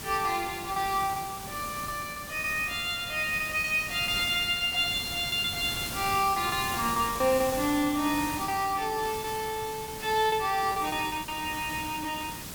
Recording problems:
background hiss; slope -2 dB per octave, SNR 9 dB
lost packets; 9% of the sound replaced, filled with repeated pitch periods

